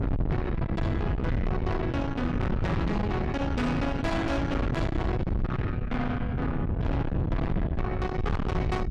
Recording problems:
distorted audio; soft clipping, signal-to-distortion ratio 7 dB
wind noise; below 280 Hz, SNR 0 dB

